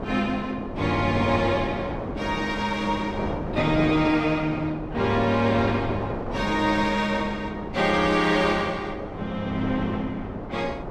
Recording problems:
wind noise; below 680 Hz, SNR 8 dB

